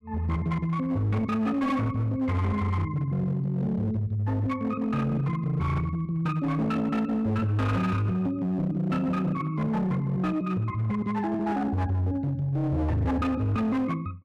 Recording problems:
distorted audio; hard clipping, signal-to-distortion ratio 10 dB

